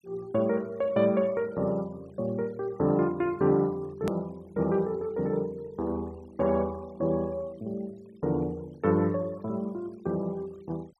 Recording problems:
denoising artefacts; signal-to-artefact ratio 28 dB
click at an edit; at 4 s

